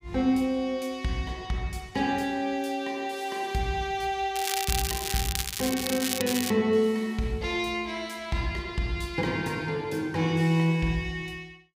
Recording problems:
crackle; from 4.5 to 6.5 s; loose cable, SNR 2 dB

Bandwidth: 15.5 kHz